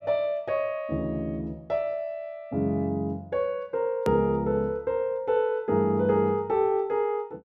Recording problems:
edit click; at 4 s

